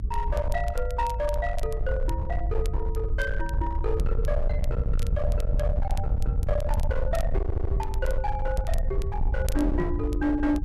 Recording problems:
distorted audio; hard clipping, uneven, signal-to-distortion ratio 8 dB
rumble; below 72 Hz, SNR -2 dB
crackling; vinyl, SNR 19 dB
stutter; at 7.5 s
microphone bump; at 10 s; peak +5 dB vs average level

